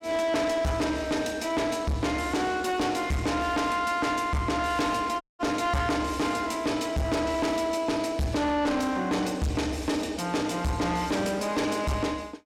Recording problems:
distorted audio; soft clipping, signal-to-distortion ratio 6 dB
audio cutting out; at 5 s

